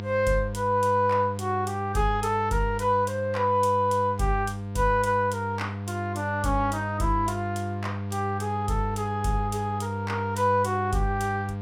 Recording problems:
electrical hum; 50 Hz, harmonics up to 1.2 kHz, SNR 7 dB

